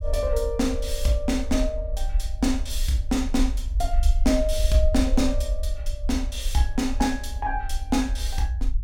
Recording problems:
low-frequency rumble; below 56 Hz, SNR 3 dB

